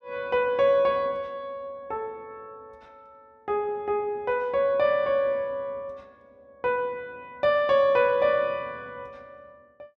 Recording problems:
none

